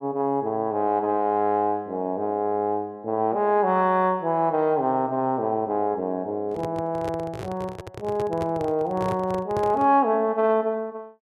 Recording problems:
handling noise; from 6.5 to 10 s; peak -4 dB vs average level

